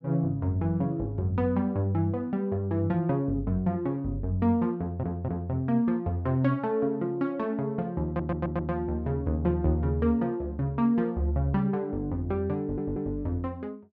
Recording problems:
audio stuttering; at 5 s, at 8 s and at 13 s

